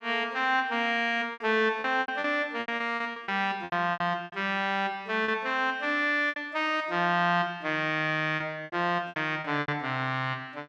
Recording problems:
lost packets; 11% of the sound replaced, filled with repeated pitch periods

